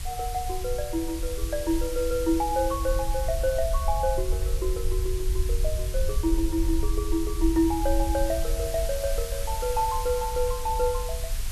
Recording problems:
background hiss; slope +1 dB per octave, SNR 10 dB
low-frequency rumble; below 58 Hz, SNR 4 dB

